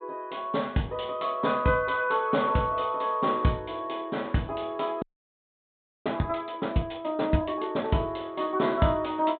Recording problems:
treble missing; nothing above 4 kHz
frozen audio; at 5 s for 1 s

